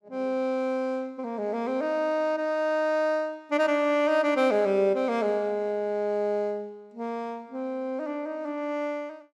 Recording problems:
none

